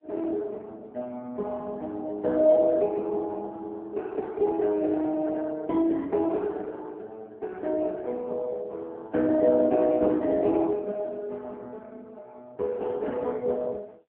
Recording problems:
phone line; 240 Hz to 2.6 kHz, AMR-NB

